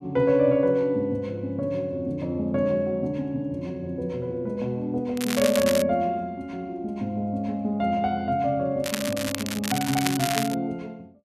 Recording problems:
crackle; at 5 s and from 9 to 11 s; loose cable, SNR 5 dB

